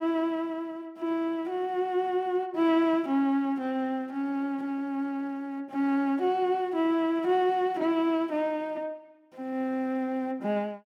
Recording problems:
none

